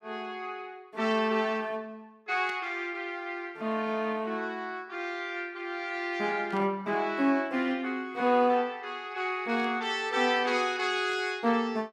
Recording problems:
static burst; 4 times, first at 2.5 s; peak -12 dB vs average level

